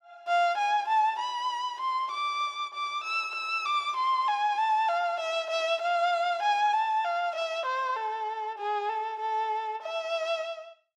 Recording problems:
none

